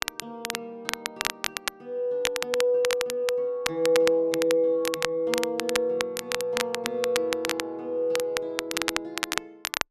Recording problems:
crackling; vinyl, SNR 4 dB

